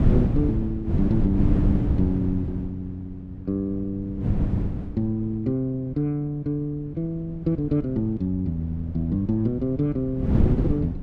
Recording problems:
wind on the microphone; below 200 Hz, SNR 0 dB

